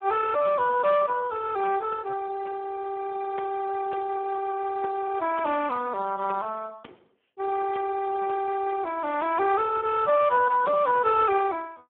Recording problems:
telephone audio; 260 Hz to 2.3 kHz, Speex

